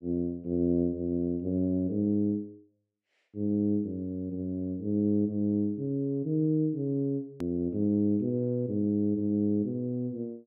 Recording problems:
click at an edit; at 7.5 s

